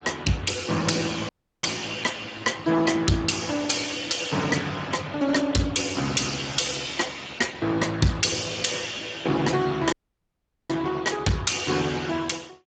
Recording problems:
lossy compression; Speex, log-spectral distance 6 dB, nothing above 7.6 kHz
distortion; soft clipping, signal-to-distortion ratio 10 dB
dropout; at 1.5 s and at 10 s for 1 s

